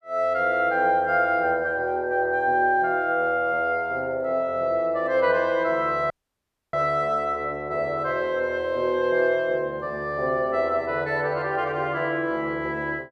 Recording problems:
audio cutting out; at 6 s for 0.5 s

